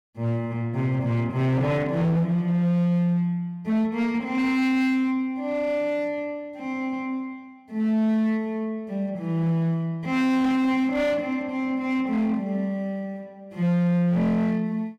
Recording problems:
distortion; hard clipping, signal-to-distortion ratio 12 dB

